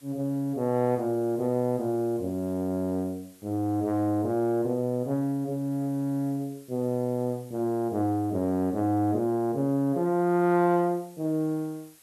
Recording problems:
background hiss; slope +1 dB per octave, SNR 27 dB

